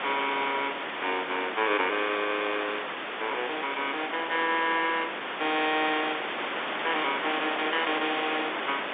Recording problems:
phone line; 240 Hz to 3.6 kHz, G.711
background hiss; SNR 3 dB

